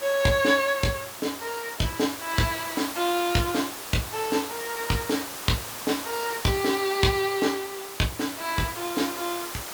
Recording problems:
background hiss; slope -2 dB per octave, SNR 8 dB

